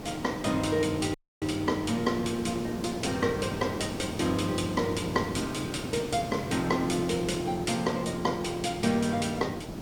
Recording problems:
background hiss; SNR 8 dB
audio cutting out; at 1 s

